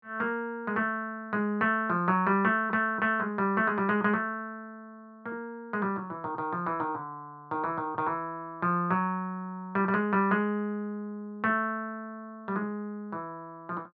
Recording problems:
none

